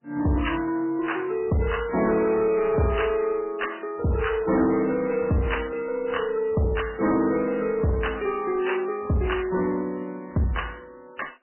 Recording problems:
lossy codec; MP3, log-spectral distance 4 dB, nothing above 3 kHz
distorted audio; soft clipping, signal-to-distortion ratio 10 dB

